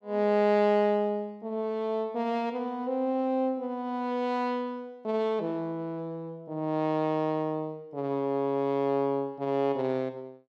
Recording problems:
none

